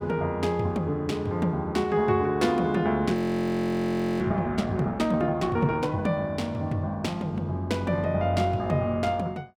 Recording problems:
audio freezing; at 3 s for 1 s

